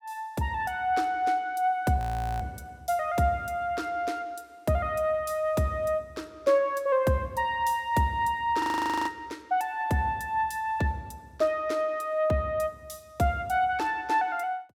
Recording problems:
frozen audio; at 2 s and at 8.5 s

